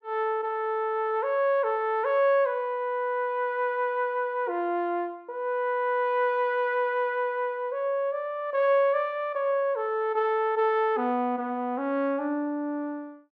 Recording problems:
low-pass filter; nothing above 8 kHz

